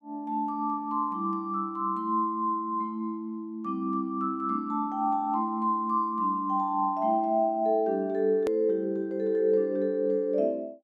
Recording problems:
hard cut with a click; at 8.5 s

